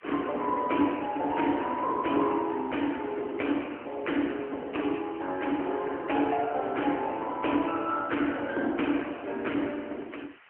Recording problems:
telephone audio; 240 Hz to 3.1 kHz, AMR-NB
hiss; SNR 26 dB

